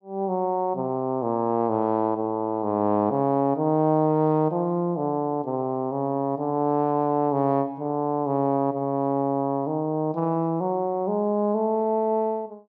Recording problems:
none

